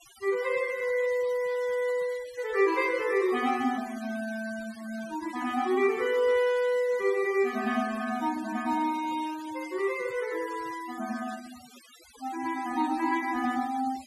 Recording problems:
denoising artefacts; signal-to-artefact ratio 18 dB

